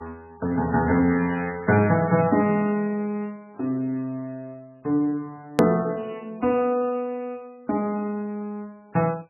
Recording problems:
codec artefacts; MP3, log-spectral distance 2 dB, nothing above 13.1 kHz
edit click; at 5.5 s

